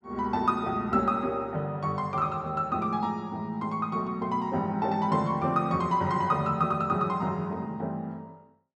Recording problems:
none

